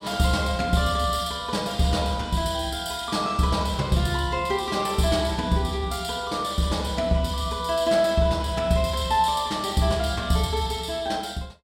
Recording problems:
none

